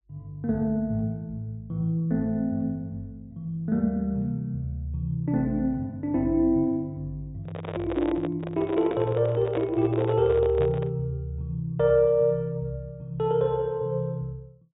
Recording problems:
treble missing; nothing above 4 kHz
handling noise; from 7.5 to 11 s; peak -3 dB vs average level

